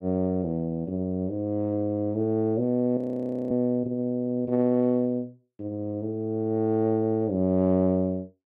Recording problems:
frozen audio; at 3 s for 0.5 s

